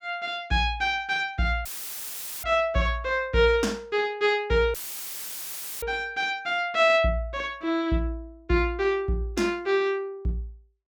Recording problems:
dropout; at 1.5 s for 1 s and at 4.5 s for 1 s; filled with static

